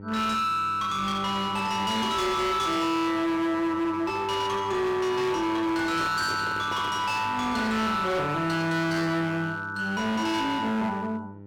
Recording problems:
distortion; hard clipping, uneven, signal-to-distortion ratio 7 dB
hum; 50 Hz, harmonics up to 1 kHz, SNR 18 dB
handling noise; from 5.5 to 7 s; peak -6 dB vs average level

